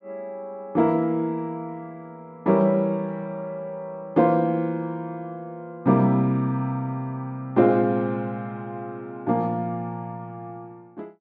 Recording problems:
none

